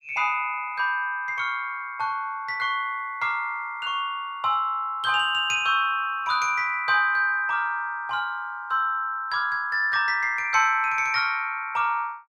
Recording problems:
none

